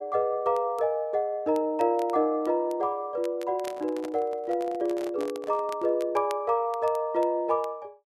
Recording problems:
crackle; vinyl, SNR 24 dB
microphone handling noise; from 3.5 to 6 s; peak -9 dB vs average level

